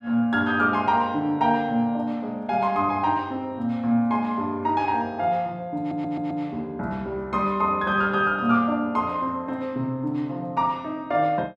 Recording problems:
stutter; at 6 s

